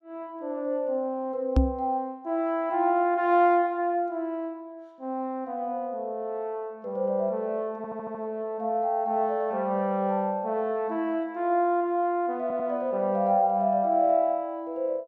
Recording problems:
knock on the microphone; at 1.5 s; peak +8 dB vs average level
stutter; at 8 s and at 12 s

